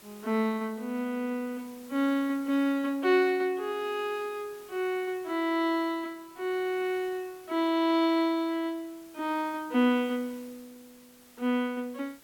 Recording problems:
hiss; slope -2 dB per octave, SNR 24 dB

